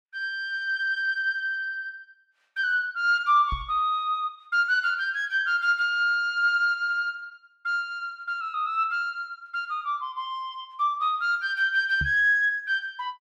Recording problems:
knock on the microphone; at 3.5 s and at 12 s; peak -3 dB vs average level

